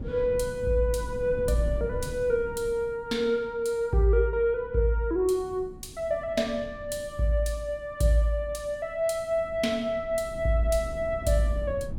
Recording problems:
wind noise; below 170 Hz, SNR 15 dB

